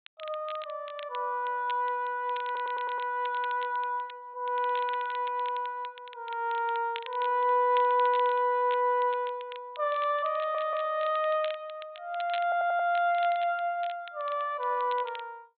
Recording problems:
treble cut off; nothing above 4 kHz
crackling; vinyl, SNR 19 dB
stutter; at 2.5 s, at 10 s and at 12 s

